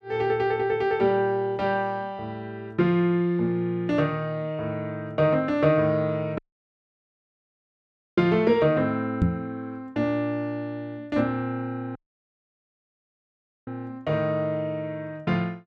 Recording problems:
audio cutting out; at 6.5 s for 2 s and at 12 s for 1.5 s
microphone bump; at 9 s; peak +7 dB vs average level

